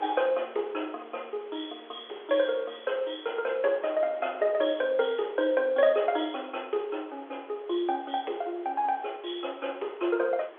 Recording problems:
telephone audio; 320 Hz to 3.4 kHz, G.711
hiss; SNR 28 dB
wind on the microphone; below 1.1 kHz, SNR 22 dB

